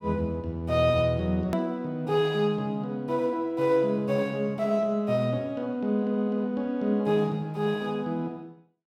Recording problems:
edit click; at 1.5 s

